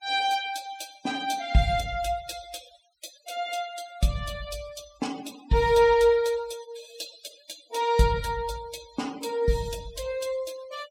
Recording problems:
denoising artefacts; signal-to-artefact ratio 20 dB

